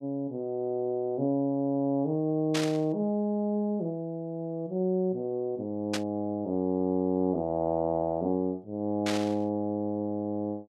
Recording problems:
burst of static; at 2.5 s, at 6 s and at 9 s; peak +1 dB vs average level

